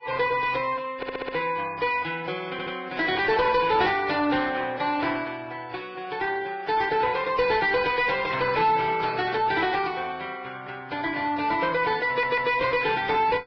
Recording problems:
codec artefacts; Vorbis, then AAC, log-spectral distance 4 dB
distorted audio; soft clipping, signal-to-distortion ratio 11 dB
stutter; at 1 s, at 2.5 s and at 12 s

